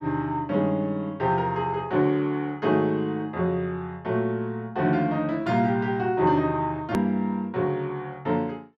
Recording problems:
edit click; at 7 s

